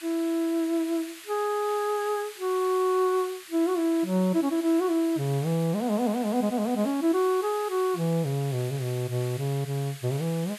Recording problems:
background hiss; SNR 16 dB

